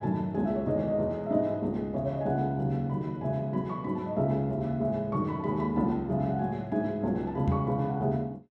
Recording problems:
microphone thump; at 7.5 s; peak +3 dB vs average level

